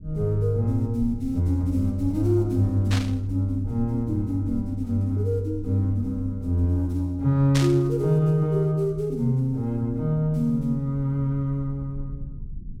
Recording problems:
low-frequency rumble; below 80 Hz, SNR 17 dB
static burst; at 3 s and at 7.5 s; peak -1 dB vs average level

